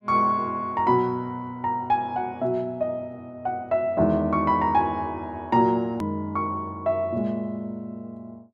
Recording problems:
click at an edit; at 6 s

